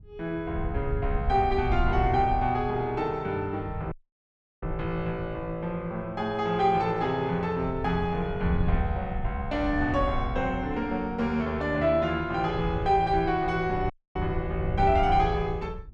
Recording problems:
wind noise; below 90 Hz, SNR 7 dB
audio cutting out; at 4 s for 0.5 s and at 14 s

